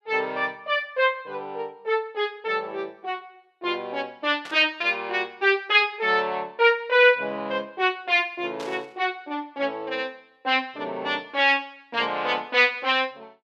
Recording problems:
burst of static; at 4.5 s and at 8.5 s; peak -11 dB vs average level

